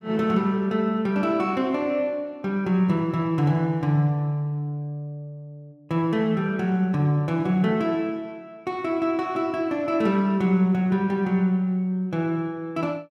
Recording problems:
none

